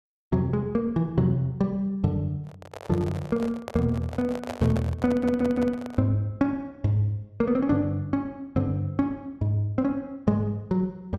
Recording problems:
handling noise; from 2.5 to 6 s; peak -3 dB vs average level
stutter; at 5 s

